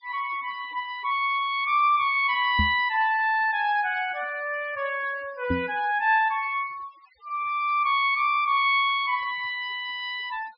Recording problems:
treble cut off; nothing above 5.5 kHz
denoising artefacts; signal-to-artefact ratio 24 dB
knock on the microphone; at 2.5 s and at 5.5 s; peak +2 dB vs average level

